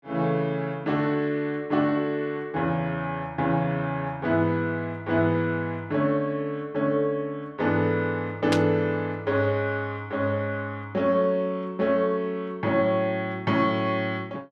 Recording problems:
static burst; at 8.5 s; peak +1 dB vs average level

